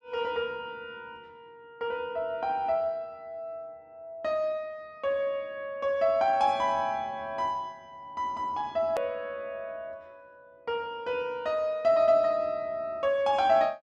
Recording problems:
edit click; at 9 s

